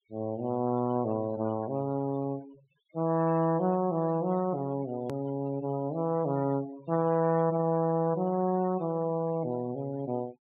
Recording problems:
treble missing; nothing above 4 kHz
noise reduction artefacts; signal-to-artefact ratio 21 dB
hard cut with a click; at 5 s

